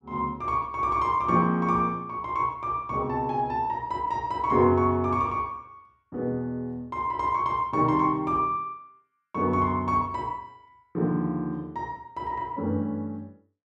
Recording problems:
none

